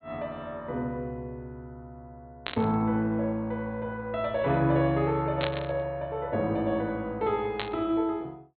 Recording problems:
low-pass filter; nothing above 4.3 kHz
static burst; at 2.5 s, at 5.5 s and at 7.5 s; peak +2 dB vs average level

